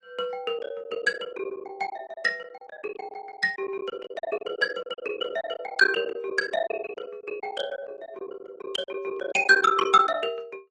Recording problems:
lossy codec; AAC, log-spectral distance 2 dB, nothing above 10.4 kHz
packet loss; 18% of the sound replaced, filled with silence

